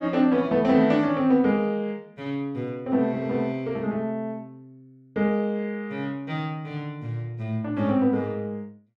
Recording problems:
none

